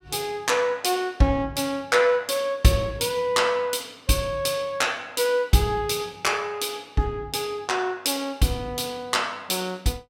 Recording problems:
none

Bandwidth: 16.5 kHz